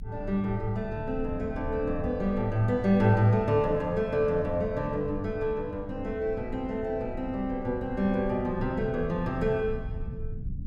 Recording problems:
low-frequency rumble; below 96 Hz, strongest tone 22 Hz, SNR 13 dB

